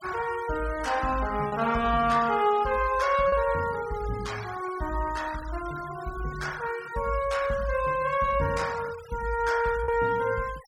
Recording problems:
noise reduction artefacts; signal-to-artefact ratio 17 dB
lost packets; 1.1% of the sound replaced, filled with repeated pitch periods

